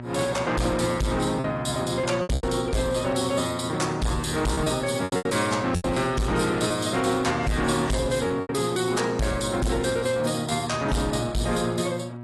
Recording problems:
lossy compression; AAC, log-spectral distance 5 dB, nothing above 11.3 kHz
distortion; soft clipping, signal-to-distortion ratio 6 dB
hum; 60 Hz, harmonics up to 1.6 kHz, SNR 12 dB
lost packets; 5% of the sound replaced, filled with repeated pitch periods

